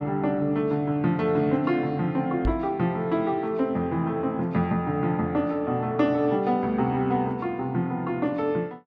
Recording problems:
knock on the microphone; at 2.5 s; peak +1 dB vs average level

